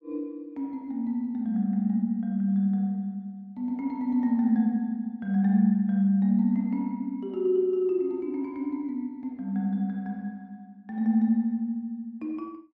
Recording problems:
none

